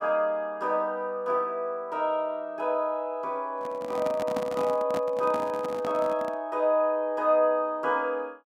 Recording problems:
microphone handling noise; from 3.5 to 6.5 s; peak -2 dB vs average level

